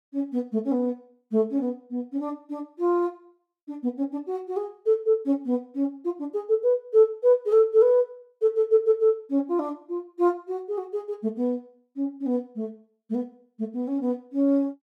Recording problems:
none

